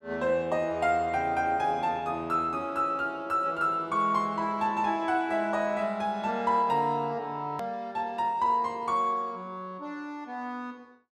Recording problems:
click at an edit; at 7.5 s

